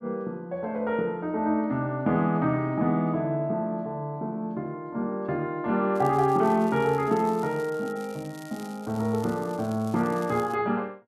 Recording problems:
crackling; from 6 to 11 s; loose cable, SNR 23 dB

